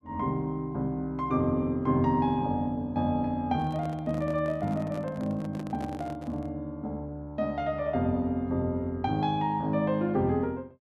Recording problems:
microphone handling noise; from 3.5 to 6.5 s; peak -9 dB vs average level

